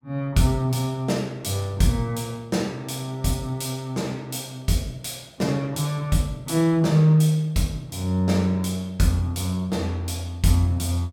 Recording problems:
none

